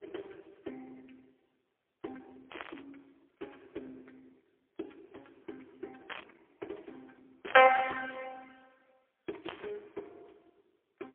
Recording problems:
phone line; 300 Hz to 2.7 kHz, AMR-NB, then MP3
static burst; 4 times, first at 2.5 s; peak -6 dB vs average level

